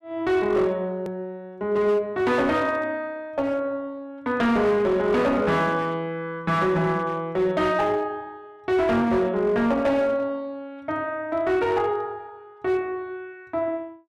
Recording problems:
distortion; hard clipping, uneven, signal-to-distortion ratio 12 dB
click at an edit; at 1 s

